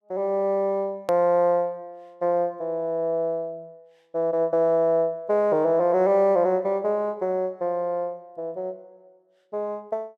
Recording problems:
click at an edit; at 1 s

